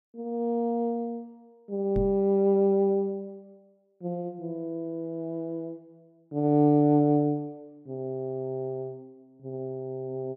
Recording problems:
microphone thump; at 2 s; peak -1 dB vs average level

